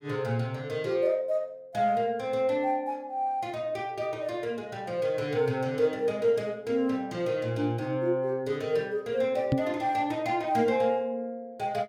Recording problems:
microphone bump; at 9.5 s; peak +6 dB vs average level

